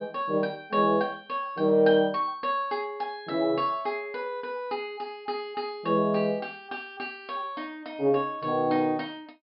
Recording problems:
low-pass filter; nothing above 5.5 kHz

